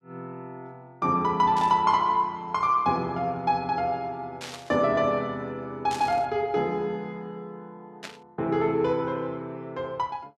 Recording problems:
burst of static; 4 times, first at 1.5 s; peak -7 dB vs average level

